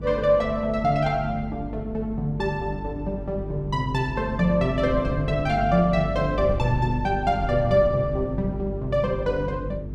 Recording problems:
hum; 50 Hz, harmonics up to 450 Hz, SNR 9 dB
wind on the microphone; below 160 Hz, SNR 14 dB

